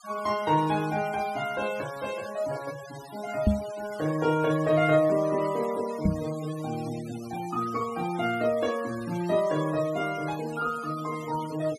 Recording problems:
denoising artefacts; signal-to-artefact ratio 17 dB
knock on the microphone; at 3.5 s and at 6 s; peak +9 dB vs average level

